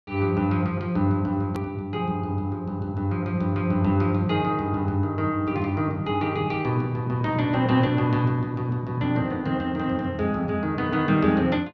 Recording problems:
click at an edit; at 1.5 s

